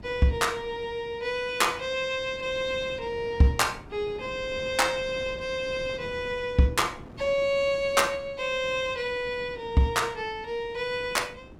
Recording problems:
wind noise; below 400 Hz, SNR 19 dB

